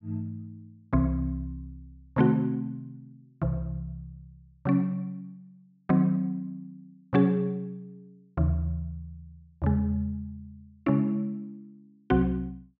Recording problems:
treble missing; nothing above 8 kHz

